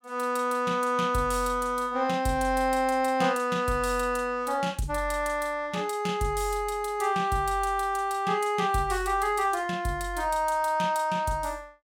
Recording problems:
none

